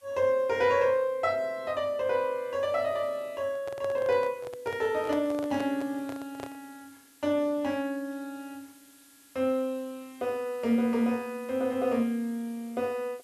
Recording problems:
background hiss; slope +1 dB per octave, SNR 27 dB
microphone handling noise; from 3.5 to 6.5 s; peak -5 dB vs average level

